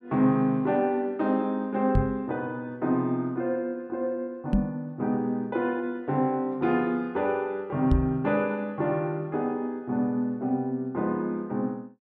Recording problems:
microphone thump; at 2 s, at 4.5 s and at 8 s; peak +7 dB vs average level

